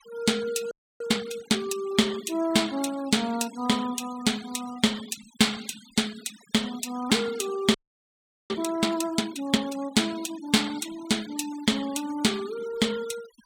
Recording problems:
denoising artefacts; signal-to-artefact ratio 18 dB
audio freezing; at 0.5 s and at 7.5 s for 1 s

